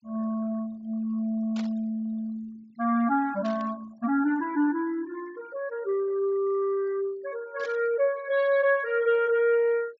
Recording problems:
low-pass filter; nothing above 8 kHz
denoising artefacts; signal-to-artefact ratio 26 dB
static burst; at 1.5 s, at 3.5 s and at 7.5 s; peak -12 dB vs average level

